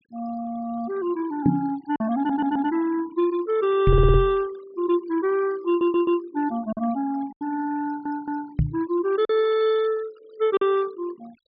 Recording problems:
treble cut off; nothing above 5.5 kHz
noise reduction artefacts; signal-to-artefact ratio 22 dB
packet loss; 3% of the sound replaced, filled with silence
knock on the microphone; at 1.5 s, at 4 s and at 8.5 s; peak +8 dB vs average level
stutter; 4 times, first at 2 s

